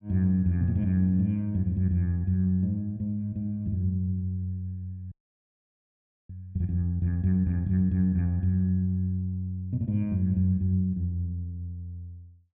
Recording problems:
frozen audio; at 5 s for 1 s

